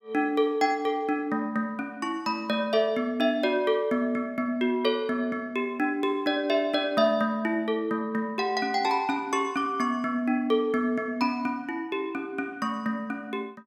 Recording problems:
none

